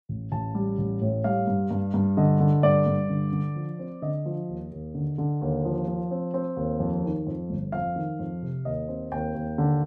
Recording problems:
none

